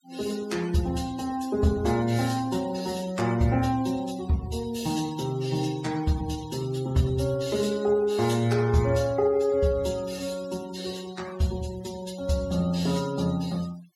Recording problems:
denoising artefacts; signal-to-artefact ratio 18 dB

